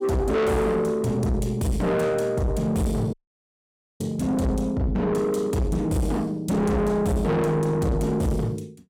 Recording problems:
distortion; soft clipping, signal-to-distortion ratio 6 dB
audio cutting out; at 3 s for 1 s

